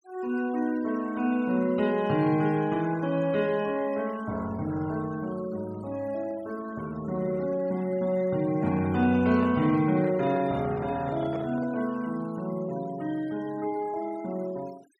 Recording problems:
noise reduction artefacts; signal-to-artefact ratio 22 dB
microphone handling noise; from 8.5 to 12 s; peak -7 dB vs average level

